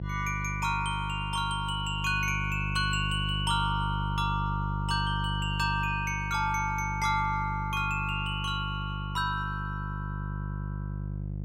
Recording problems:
hum; 50 Hz, harmonics up to 500 Hz, SNR 4 dB

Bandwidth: 16 kHz